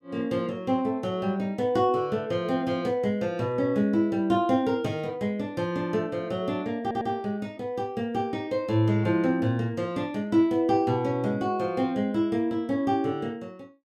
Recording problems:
audio stuttering; at 7 s

